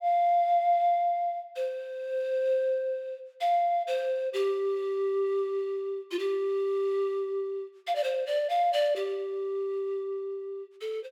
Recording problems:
none

